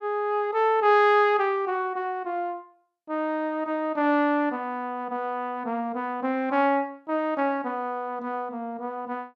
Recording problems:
none

